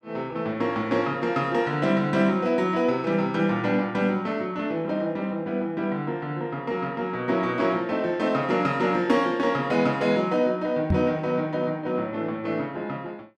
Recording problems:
knock on the microphone; at 11 s; peak +6 dB vs average level

